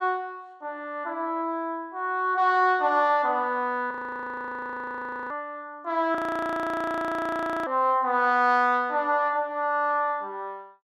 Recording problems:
audio freezing; at 4 s for 1.5 s and at 6 s for 1.5 s

